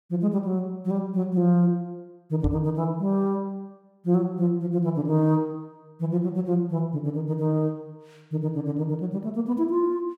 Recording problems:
microphone bump; at 2.5 s; peak +2 dB vs average level

